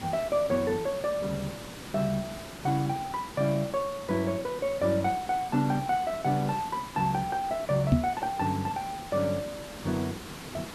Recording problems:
background hiss; slope -4 dB per octave, SNR 12 dB
microphone thump; at 8 s; peak +9 dB vs average level

